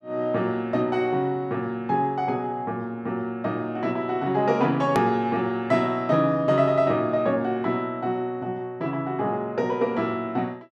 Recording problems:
hard cut with a click; at 5 s

